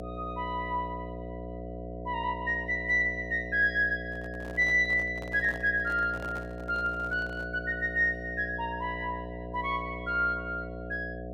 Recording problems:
electrical hum; 60 Hz, harmonics up to 720 Hz, SNR 10 dB
microphone handling noise; from 4 to 7.5 s; peak -11 dB vs average level

